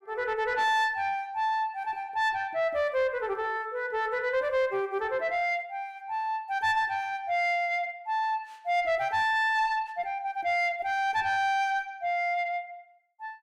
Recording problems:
distorted audio; soft clipping, signal-to-distortion ratio 10 dB

